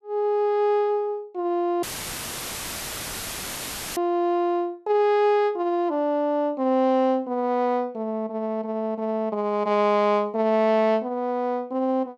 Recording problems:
dropout; at 2 s for 2 s; filled with static

